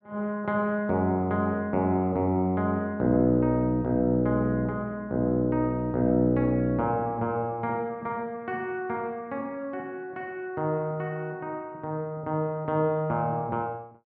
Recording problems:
none

